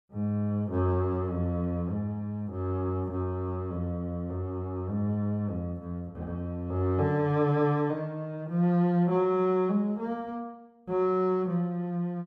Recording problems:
none

